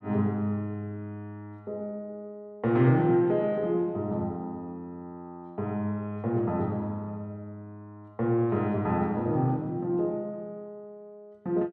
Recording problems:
none

